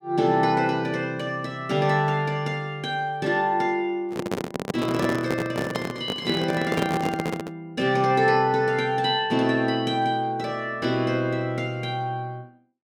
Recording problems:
handling noise; from 4 to 7.5 s; peak +2 dB vs average level

